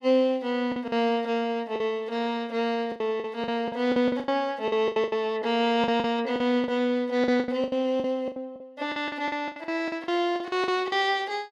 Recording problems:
packet loss; 15% of the sound replaced, filled with the last packet

